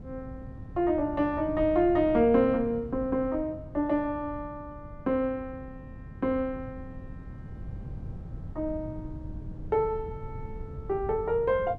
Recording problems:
wind on the microphone; below 160 Hz, SNR 14 dB

